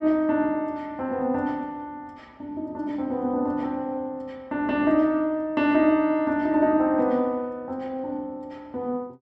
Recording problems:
none

